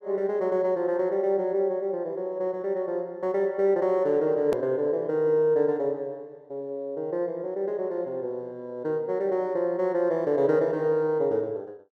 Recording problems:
click at an edit; at 4.5 s

